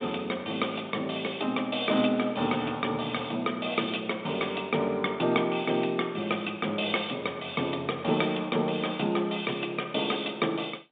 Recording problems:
telephone audio; 130 Hz to 3.7 kHz, G.711

